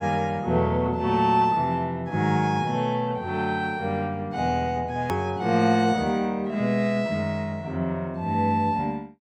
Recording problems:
edit click; at 5 s

